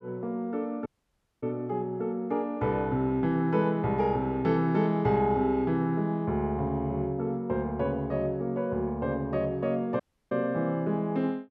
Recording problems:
dropout; at 1 s for 0.5 s and at 10 s

